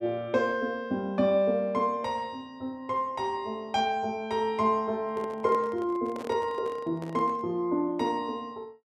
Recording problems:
microphone handling noise; from 5 to 7.5 s; peak -7 dB vs average level

